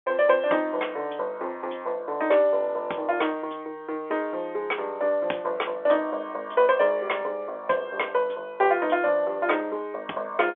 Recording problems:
telephone audio; 320 Hz to 3.4 kHz, G.711

